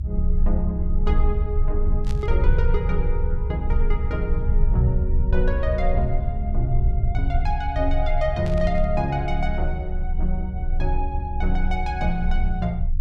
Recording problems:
low-frequency rumble; below 68 Hz, strongest tone 26 Hz, SNR -2 dB
burst of static; at 2 s and at 8.5 s; peak -8 dB vs average level

